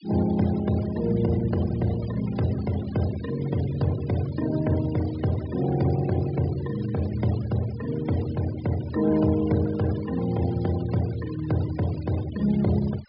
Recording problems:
treble cut off; nothing above 5.5 kHz
noise reduction artefacts; signal-to-artefact ratio 18 dB

